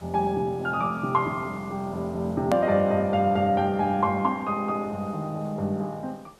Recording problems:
background hiss; slope -5 dB per octave, SNR 27 dB
edit click; at 2.5 s

